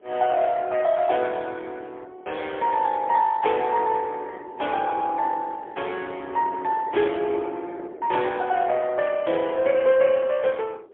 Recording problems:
telephone audio; 320 Hz to 3.5 kHz, AMR-NB, then MP3
wind on the microphone; below 500 Hz, SNR 19 dB

